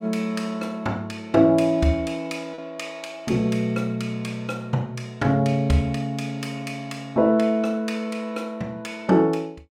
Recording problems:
lost packets; 0.4% of the sound replaced, filled with repeated pitch periods

